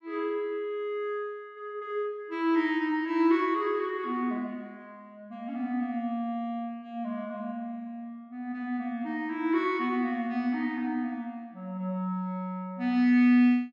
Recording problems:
none

